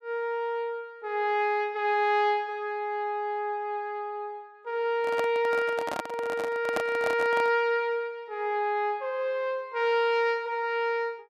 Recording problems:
microphone handling noise; from 5 to 7.5 s; peak +2 dB vs average level

